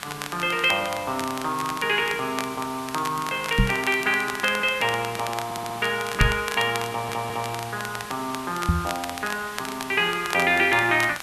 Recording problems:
hiss; SNR 14 dB
crackling; vinyl, SNR 12 dB
microphone bump; at 3.5 s, at 6 s and at 8.5 s; peak +7 dB vs average level
stutter; at 5.5 s and at 7 s

